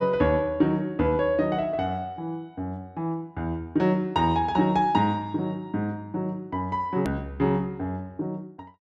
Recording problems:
hard cut with a click; at 7 s

